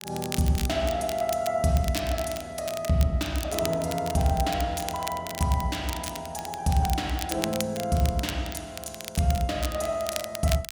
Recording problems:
crackling; vinyl, SNR 10 dB

